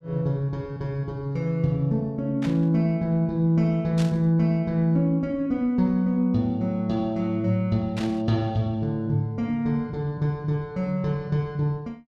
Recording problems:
static burst; at 2.5 s, at 4 s and at 8 s; peak -8 dB vs average level

